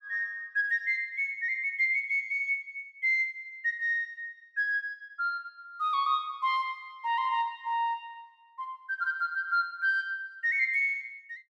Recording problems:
none

